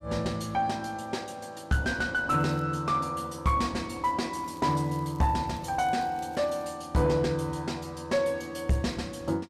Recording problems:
distorted audio; soft clipping, signal-to-distortion ratio 11 dB
crackle; at 2.5 s and from 4.5 to 6.5 s; loose cable, SNR 28 dB

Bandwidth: 14.5 kHz